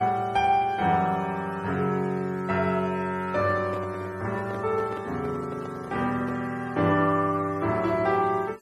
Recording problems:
noise reduction artefacts; signal-to-artefact ratio 26 dB
microphone handling noise; from 3.5 to 6.5 s; peak -9 dB vs average level

